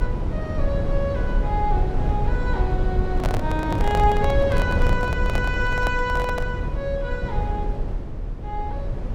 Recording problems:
rumble; below 120 Hz, SNR -1 dB
handling noise; from 3 to 6.5 s; peak +2 dB vs average level

